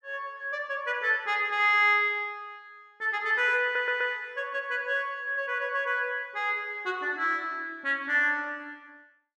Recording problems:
audio stuttering; at 3.5 s

